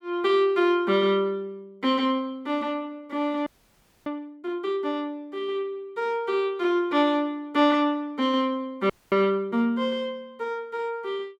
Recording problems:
audio freezing; at 3.5 s for 0.5 s and at 9 s

